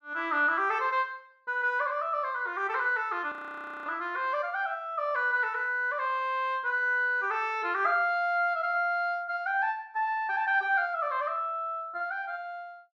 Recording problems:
audio freezing; at 3.5 s for 0.5 s

